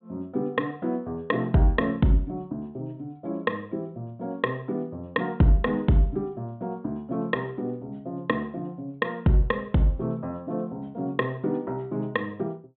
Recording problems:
low-pass filter; nothing above 4 kHz

